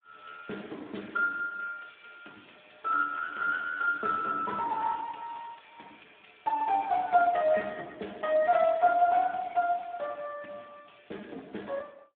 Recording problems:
phone line; 240 Hz to 2.8 kHz, Speex

